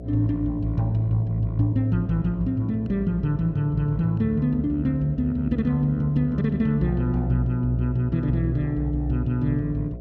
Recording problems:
hum; 60 Hz, harmonics up to 720 Hz, SNR 14 dB

